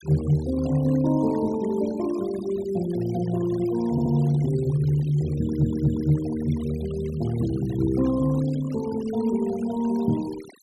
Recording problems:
noise reduction artefacts; signal-to-artefact ratio 20 dB
audio stuttering; at 4 s and at 5.5 s

